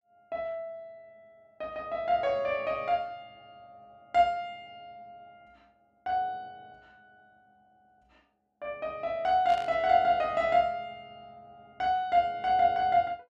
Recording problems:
static burst; at 9.5 s; peak -12 dB vs average level

